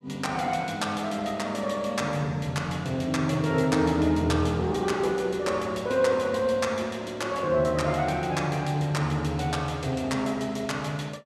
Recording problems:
none

